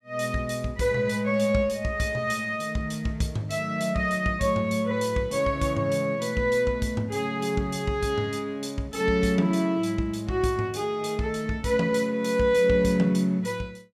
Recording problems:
none

